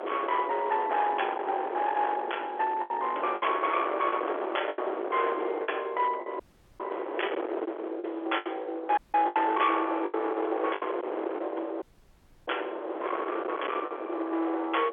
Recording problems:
phone line; 300 Hz to 3.4 kHz, G.711
distortion; hard clipping, signal-to-distortion ratio 11 dB
wind on the microphone; below 1.1 kHz, SNR 6 dB
packet loss; 6% of the sound replaced, filled with the last packet
audio cutting out; at 6.5 s, at 9 s and at 12 s for 0.5 s

